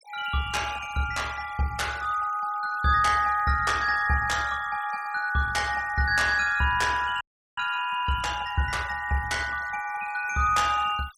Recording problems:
noise reduction artefacts; signal-to-artefact ratio 19 dB
frozen audio; at 7 s

